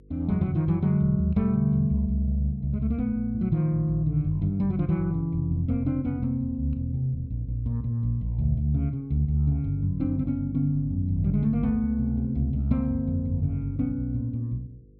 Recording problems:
hum; 50 Hz, harmonics up to 500 Hz, SNR 28 dB

